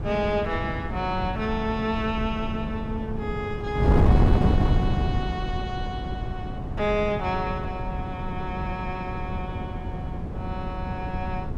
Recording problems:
wind on the microphone; below 210 Hz, SNR -2 dB

